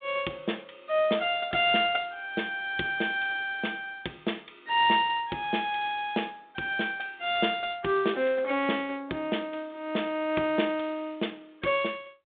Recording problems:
telephone audio; 240 Hz to 3.7 kHz, G.726

